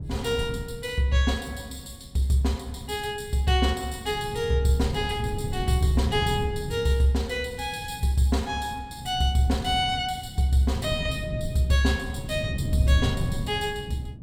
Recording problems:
wind on the microphone; below 160 Hz, SNR 8 dB

